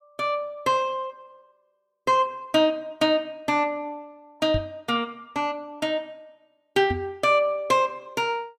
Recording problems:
knock on the microphone; at 4.5 s and at 7 s; peak 0 dB vs average level

